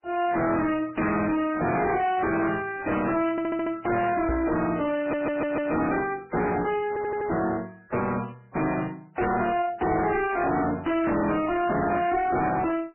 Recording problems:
codec artefacts; MP3, then Vorbis, log-spectral distance 4 dB, nothing above 2.5 kHz
distorted audio; soft clipping, signal-to-distortion ratio 5 dB
audio stuttering; at 3.5 s, at 5 s and at 7 s
knock on the microphone; at 4.5 s; peak +3 dB vs average level

